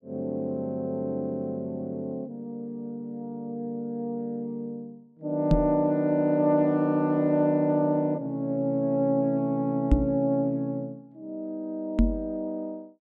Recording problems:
knock on the microphone; at 5.5 s, at 10 s and at 12 s; peak +9 dB vs average level

